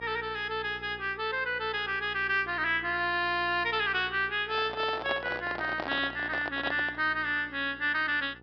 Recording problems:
low-pass filter; nothing above 5.5 kHz
hum; 60 Hz, harmonics up to 1.3 kHz, SNR 21 dB
handling noise; from 4.5 to 7 s; peak -2 dB vs average level

